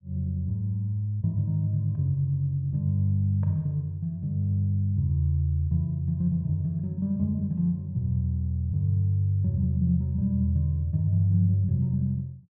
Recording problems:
none

